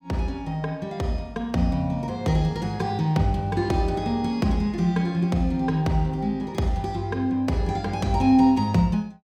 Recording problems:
none

